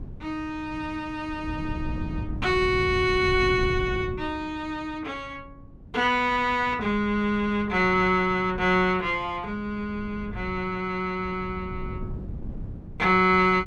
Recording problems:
wind on the microphone; below 170 Hz, SNR 12 dB

